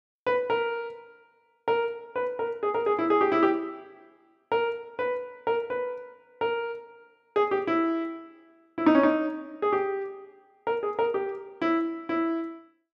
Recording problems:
none

